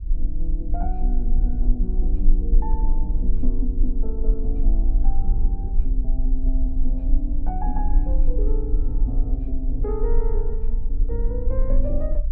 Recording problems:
low-frequency rumble; below 38 Hz, strongest tone 22 Hz, SNR -8 dB

